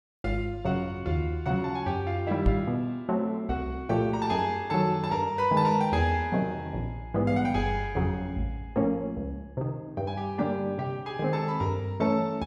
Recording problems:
microphone thump; at 2.5 s; peak +7 dB vs average level

